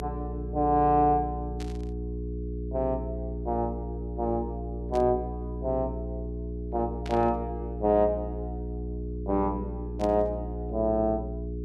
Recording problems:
electrical hum; 60 Hz, harmonics up to 420 Hz, SNR 7 dB
burst of static; 4 times, first at 1.5 s; peak -10 dB vs average level

